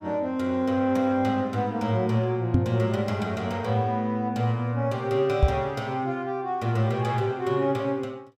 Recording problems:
microphone thump; at 2.5 s and at 5.5 s; peak +9 dB vs average level

